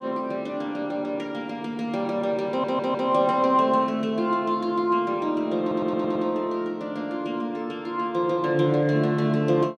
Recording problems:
stutter; at 2.5 s and at 5.5 s

